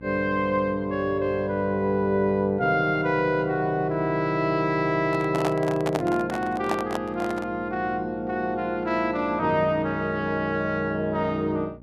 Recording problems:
hum; 60 Hz, harmonics up to 900 Hz, SNR 21 dB
microphone handling noise; from 5 to 7.5 s; peak 0 dB vs average level

